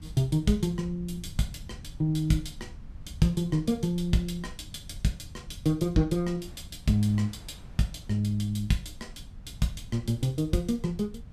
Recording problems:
low-frequency rumble; below 110 Hz, SNR 17 dB
wind on the microphone; below 1.3 kHz, SNR 31 dB

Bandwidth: 14.5 kHz